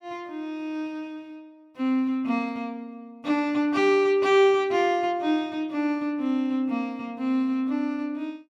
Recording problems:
none

